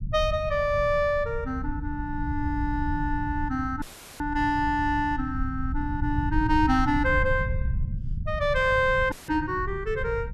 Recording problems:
rumble; below 110 Hz, SNR 7 dB
dropout; at 4 s and at 9 s; filled with static

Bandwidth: 13 kHz